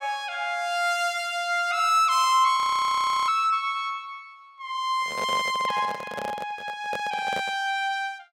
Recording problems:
audio freezing; at 2.5 s for 0.5 s
microphone handling noise; from 5 to 7.5 s; peak -5 dB vs average level

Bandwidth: 16.5 kHz